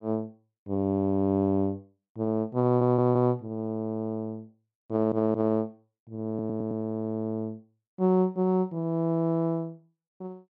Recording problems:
stutter; at 2.5 s, at 5 s and at 6.5 s

